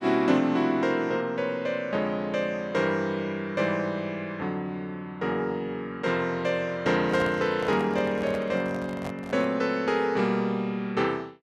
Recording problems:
handling noise; from 7 to 9.5 s; peak -5 dB vs average level

